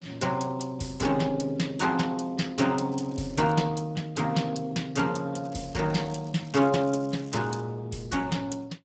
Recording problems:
lossy codec; Speex, log-spectral distance 5 dB, nothing above 7.8 kHz
crackling; at 3 s and from 5.5 to 7.5 s; loose cable, SNR 26 dB

